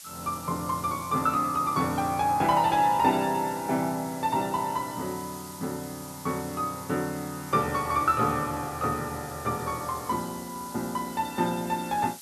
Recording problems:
hiss; slope +4 dB per octave, SNR 15 dB

